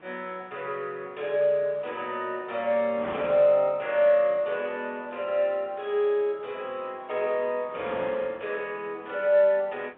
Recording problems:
phone line; 220 Hz to 3.6 kHz, G.711
wind on the microphone; below 1.4 kHz, SNR 19 dB

